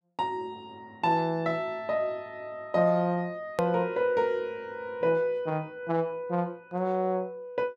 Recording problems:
hard cut with a click; at 3.5 s

